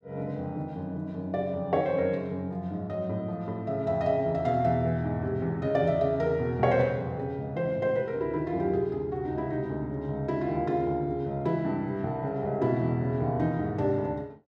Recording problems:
none

